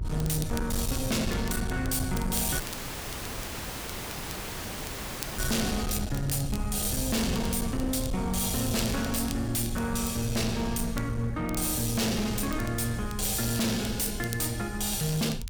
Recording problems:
distortion; hard clipping, signal-to-distortion ratio 7 dB
low-frequency rumble; below 120 Hz, SNR 7 dB
crackling; vinyl, SNR 16 dB
dropout; at 2.5 s for 3 s

